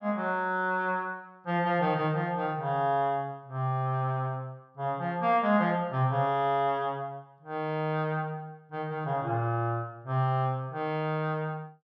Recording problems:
none

